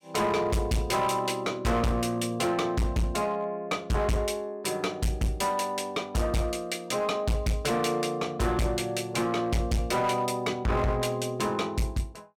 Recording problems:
distortion; hard clipping, signal-to-distortion ratio 7 dB

